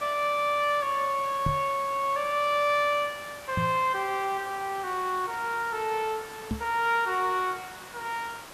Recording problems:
background hiss; SNR 16 dB
microphone thump; at 1.5 s, at 3.5 s and at 6.5 s; peak +2 dB vs average level

